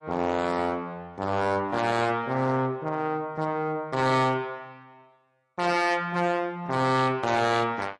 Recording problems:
lossy codec; MP3, then AAC, log-spectral distance 2 dB, nothing above 10.7 kHz
distorted audio; hard clipping, uneven, signal-to-distortion ratio 11 dB

